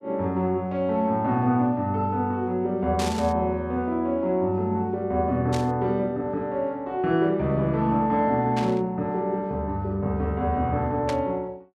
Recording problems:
static burst; 4 times, first at 3 s; peak -4 dB vs average level

